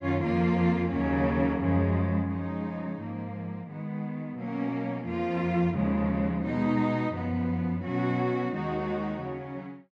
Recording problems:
none

